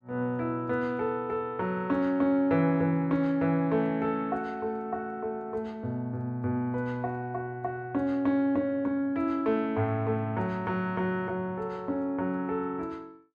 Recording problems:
none

